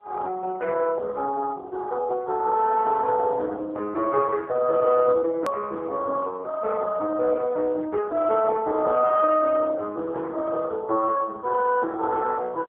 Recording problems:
phone line; 340 Hz to 2.5 kHz, AMR-NB, then MP3
click at an edit; at 5.5 s

